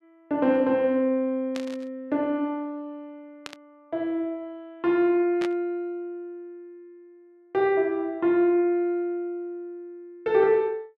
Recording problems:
static burst; at 1.5 s, at 3.5 s and at 5.5 s; peak -7 dB vs average level

